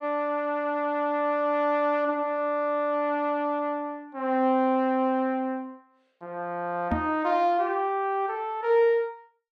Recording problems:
microphone bump; at 7 s; peak +2 dB vs average level

